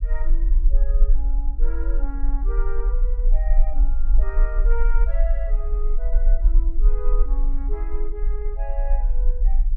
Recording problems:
rumble; below 40 Hz, SNR -14 dB

